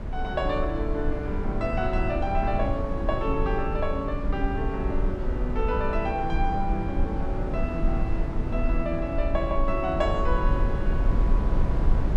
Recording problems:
low-frequency rumble; below 72 Hz, SNR 0 dB

